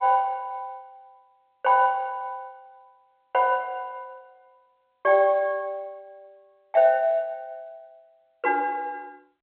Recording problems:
telephone audio; 320 Hz to 3.6 kHz, G.711

